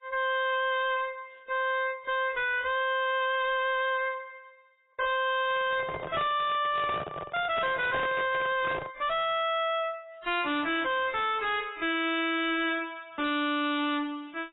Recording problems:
codec artefacts; AAC, log-spectral distance 5 dB, nothing above 3.3 kHz
distorted audio; hard clipping, uneven, signal-to-distortion ratio 4 dB
handling noise; from 5.5 to 9 s; peak 0 dB vs average level

